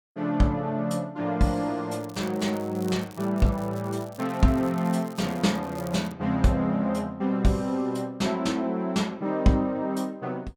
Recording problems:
crackle; from 2 to 6 s; loose cable, SNR 22 dB

